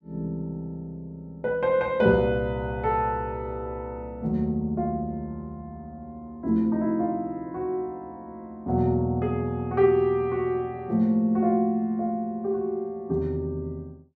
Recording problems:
none

